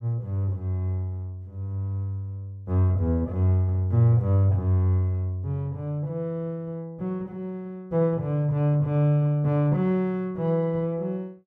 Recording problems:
none

